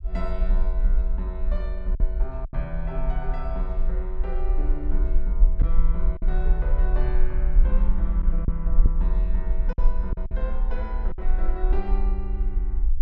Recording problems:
low-frequency rumble; below 42 Hz, strongest tone 18 Hz, SNR -10 dB
lost packets; 3% of the sound replaced, filled with silence

